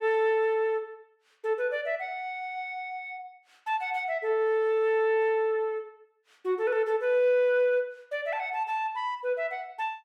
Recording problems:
none

